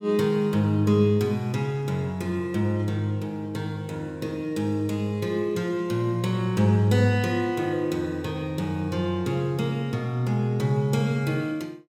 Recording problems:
none

